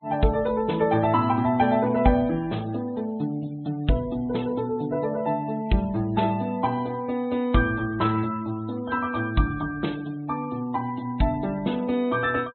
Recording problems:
low-pass filter; nothing above 4.1 kHz
noise reduction artefacts; signal-to-artefact ratio 24 dB

